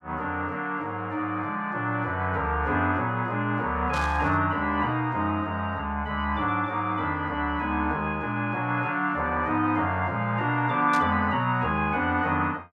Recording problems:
burst of static; at 4 s and at 11 s; peak -7 dB vs average level

